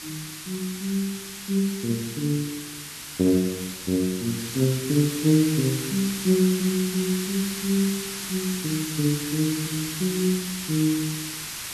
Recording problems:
background hiss; SNR 7 dB

